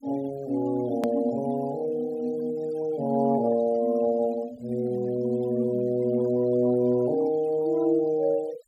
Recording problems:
noise reduction artefacts; signal-to-artefact ratio 24 dB
click at an edit; at 1 s

